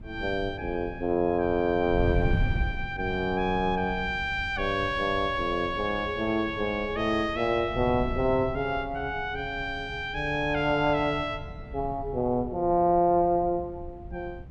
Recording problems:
wind on the microphone; below 120 Hz, SNR 11 dB

